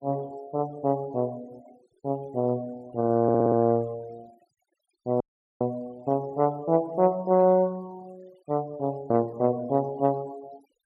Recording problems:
noise reduction artefacts; signal-to-artefact ratio 27 dB
audio stuttering; at 3 s
dropout; at 5 s

